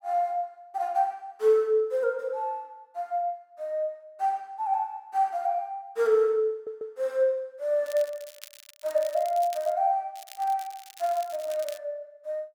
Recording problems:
audio stuttering; at 6.5 s
crackle; from 8 to 9.5 s and from 10 to 12 s; loose cable, SNR 19 dB

